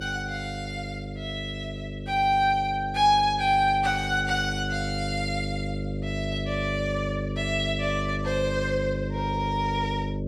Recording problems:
hum; 50 Hz, harmonics up to 600 Hz, SNR 5 dB

